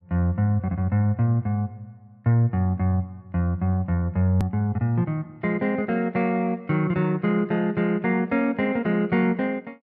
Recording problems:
edit click; at 4.5 s

